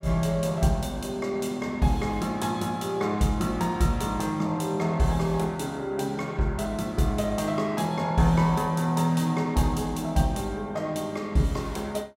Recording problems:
none

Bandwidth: 16 kHz